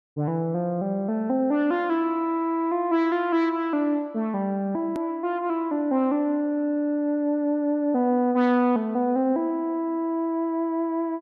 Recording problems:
hard cut with a click; at 5 s

